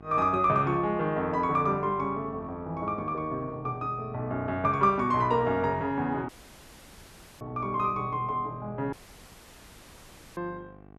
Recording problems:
electrical hum; 50 Hz, harmonics up to 1.6 kHz, SNR 22 dB
dropout; at 6.5 s for 1 s and at 9 s for 1.5 s

